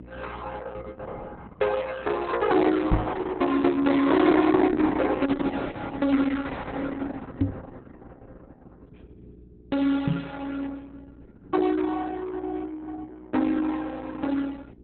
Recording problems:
codec artefacts; Opus, log-spectral distance 4 dB, nothing above 4 kHz
hum; 60 Hz, harmonics up to 420 Hz, SNR 24 dB
microphone bump; at 3 s, at 7.5 s and at 10 s; peak +6 dB vs average level

